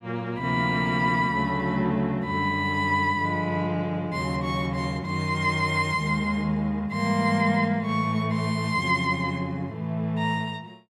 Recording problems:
none

